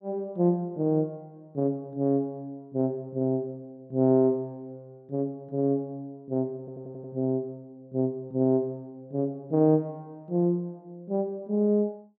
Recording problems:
audio stuttering; at 6.5 s

